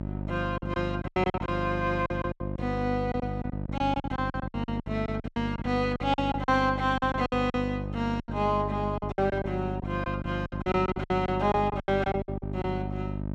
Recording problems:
hum; 50 Hz, harmonics up to 950 Hz, SNR 5 dB
packet loss; 16% of the sound replaced, filled with silence

